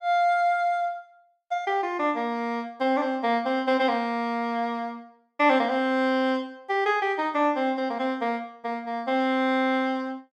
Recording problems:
none

